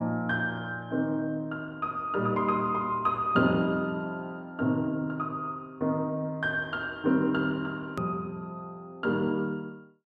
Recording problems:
edit click; at 8 s

